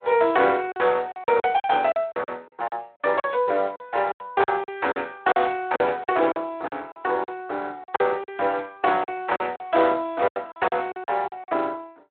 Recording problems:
telephone audio; 340 Hz to 3.7 kHz, Speex
lost packets; 13% of the sound replaced, filled with silence

